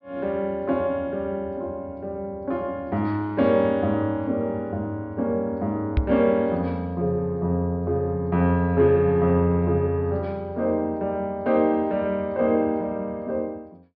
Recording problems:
treble cut off; nothing above 5.5 kHz
microphone bump; at 6 s; peak +6 dB vs average level

